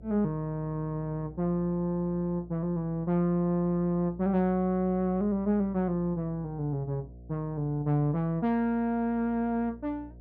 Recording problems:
hum; 60 Hz, harmonics up to 720 Hz, SNR 20 dB

